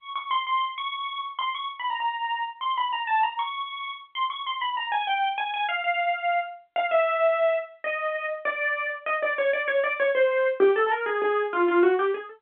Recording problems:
telephone audio; 190 Hz to 3.5 kHz, G.711

